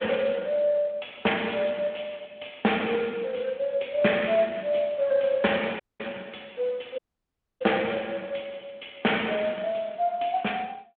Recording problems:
phone line; 190 Hz to 3.4 kHz, Speex
dropout; at 6 s and at 7 s for 0.5 s

